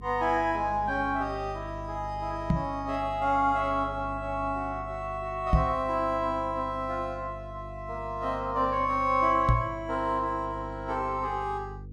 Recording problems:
electrical hum; 50 Hz, harmonics up to 500 Hz, SNR 14 dB
knock on the microphone; at 2.5 s, at 5.5 s and at 9.5 s; peak +9 dB vs average level

